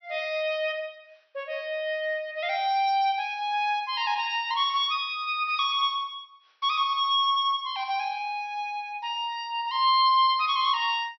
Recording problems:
treble cut off; nothing above 5.9 kHz

